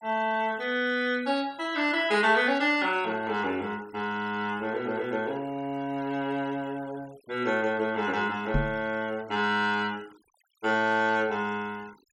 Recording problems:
noise reduction artefacts; signal-to-artefact ratio 24 dB
knock on the microphone; at 8.5 s; peak +3 dB vs average level

